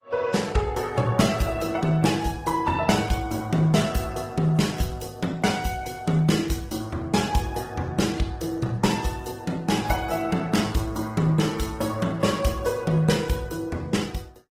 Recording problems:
codec artefacts; AAC, then Opus, log-spectral distance 4 dB

